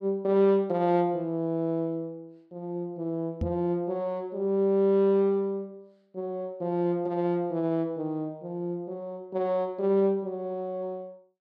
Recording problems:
knock on the microphone; at 3.5 s; peak +1 dB vs average level

